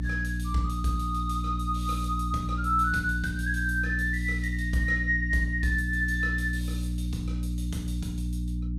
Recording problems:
hum; 60 Hz, harmonics up to 300 Hz, SNR 2 dB

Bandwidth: 15.5 kHz